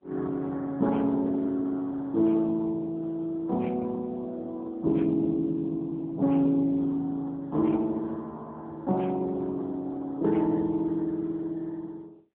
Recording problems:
telephone audio; 150 Hz to 2.6 kHz, AMR-NB

